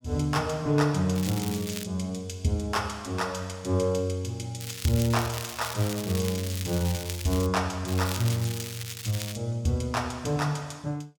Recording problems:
crackling; at 1 s, from 4.5 to 7.5 s and from 8 to 9.5 s; loose cable, SNR 9 dB

